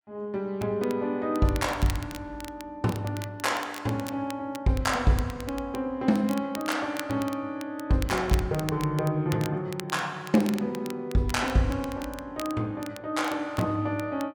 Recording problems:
crackle; vinyl, SNR 16 dB

